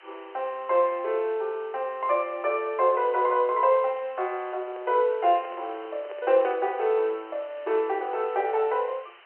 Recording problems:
telephone audio; 340 Hz to 3.2 kHz, G.711
background hiss; SNR 26 dB
microphone handling noise; from 4.5 to 7 s; peak -12 dB vs average level

